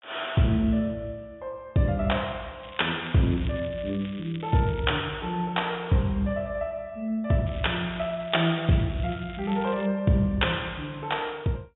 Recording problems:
treble missing; nothing above 3.7 kHz
crackling; from 2.5 to 5 s and from 7.5 to 10 s; loose cable, SNR 19 dB

